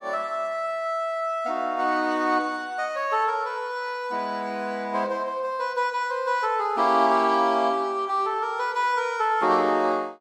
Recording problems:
none

